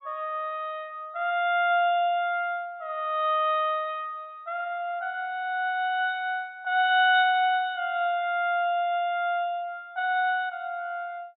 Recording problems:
treble missing; nothing above 4 kHz

